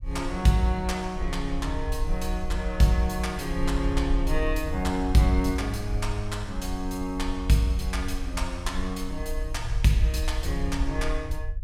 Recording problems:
rumble; below 60 Hz, SNR 6 dB

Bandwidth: 16 kHz